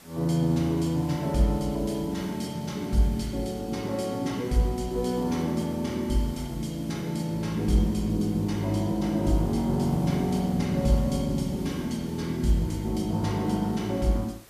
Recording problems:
background hiss; slope -3 dB per octave, SNR 22 dB

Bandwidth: 14.5 kHz